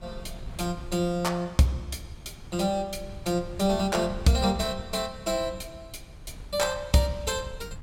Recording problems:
wind noise; below 120 Hz, SNR 16 dB

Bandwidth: 16.5 kHz